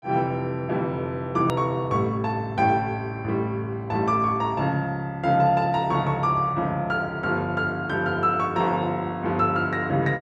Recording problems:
edit click; at 1.5 s

